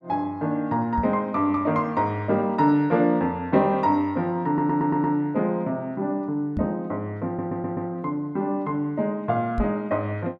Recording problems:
microphone thump; at 1 s, at 6.5 s and at 9.5 s; peak -1 dB vs average level
audio stuttering; at 4.5 s and at 7.5 s

